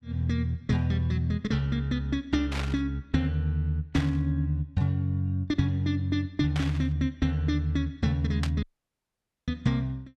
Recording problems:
burst of static; 4 times, first at 2.5 s; peak -2 dB vs average level
dropout; at 8.5 s for 1 s

